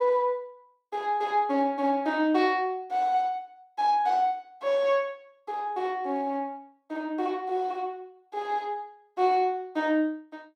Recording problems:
none

